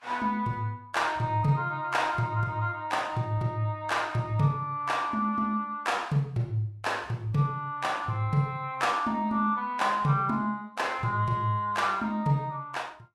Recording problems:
lossy compression; Vorbis, log-spectral distance 2 dB, nothing above 12.3 kHz

